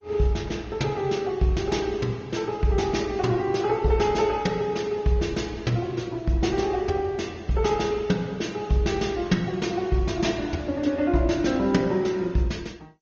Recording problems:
lossy compression; MP2, then Opus, log-spectral distance 3 dB, nothing above 6.7 kHz

